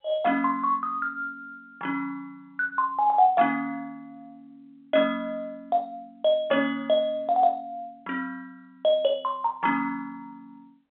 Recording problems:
phone line; 300 Hz to 3.6 kHz, G.711

